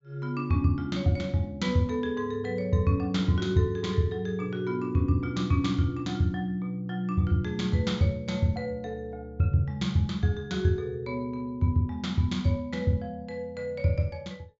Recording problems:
low-pass filter; nothing above 7.5 kHz

